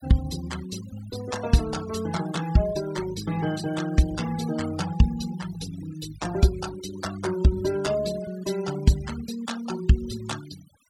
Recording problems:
denoising artefacts; signal-to-artefact ratio 14 dB

